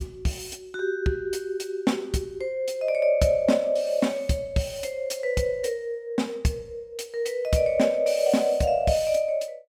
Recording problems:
none

